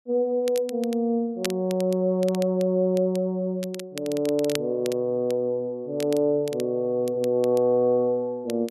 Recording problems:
crackle; vinyl, SNR 17 dB

